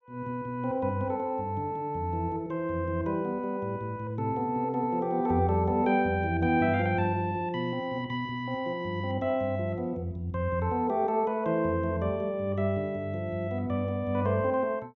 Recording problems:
none

